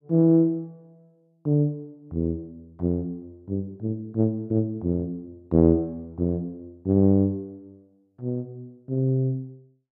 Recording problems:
none

